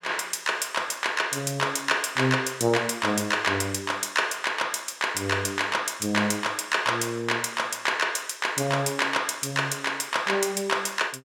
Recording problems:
none

